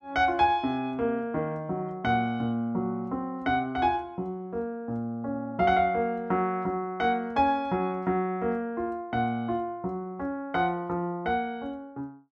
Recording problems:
none

